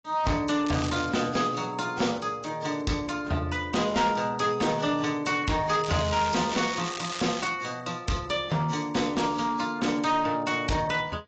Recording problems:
lossy compression; AAC, log-spectral distance 6 dB, nothing above 7.3 kHz
distorted audio; hard clipping, signal-to-distortion ratio 12 dB
crackle; at 0.5 s and from 6 to 7.5 s; loose cable, SNR 10 dB

